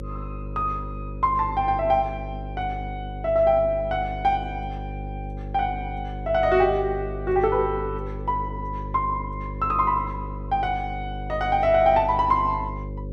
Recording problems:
hum; 50 Hz, harmonics up to 550 Hz, SNR 10 dB

